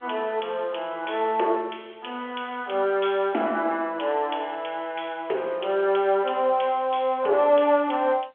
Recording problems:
phone line; 300 Hz to 3.4 kHz, G.711
distortion; soft clipping, signal-to-distortion ratio 14 dB

